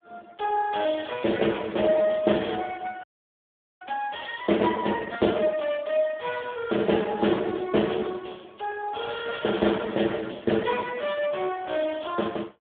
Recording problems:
phone line; 190 Hz to 3.5 kHz, Speex
audio freezing; at 3 s for 1 s

